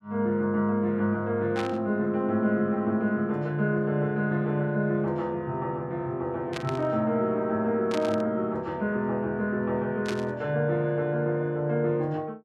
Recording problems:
static burst; 4 times, first at 1.5 s; peak -4 dB vs average level

